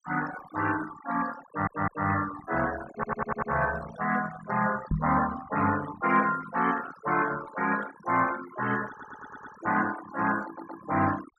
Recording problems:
noise reduction artefacts; signal-to-artefact ratio 12 dB
stutter; 4 times, first at 1.5 s
microphone bump; at 5 s; peak +4 dB vs average level

